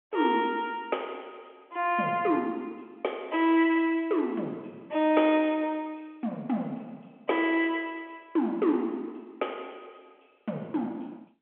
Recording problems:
phone line; 190 Hz to 3.3 kHz, G.711

